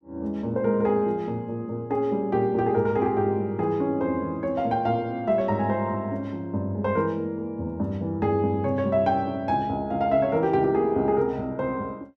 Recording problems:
none

